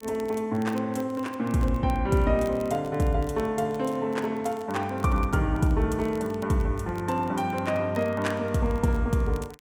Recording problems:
crackle; vinyl, SNR 26 dB

